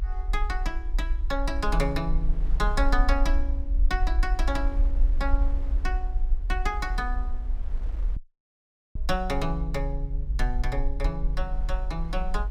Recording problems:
low-frequency rumble; below 46 Hz, SNR -2 dB
wind on the microphone; below 640 Hz, SNR 18 dB
audio cutting out; at 8 s for 1 s

